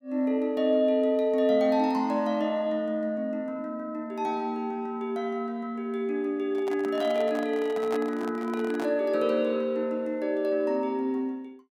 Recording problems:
microphone handling noise; from 6.5 to 9 s; peak -5 dB vs average level

